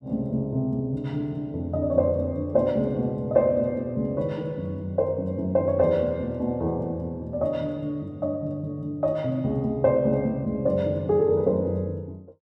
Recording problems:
none

